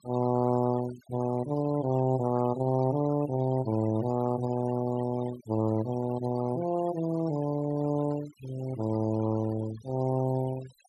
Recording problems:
noise reduction artefacts; signal-to-artefact ratio 17 dB

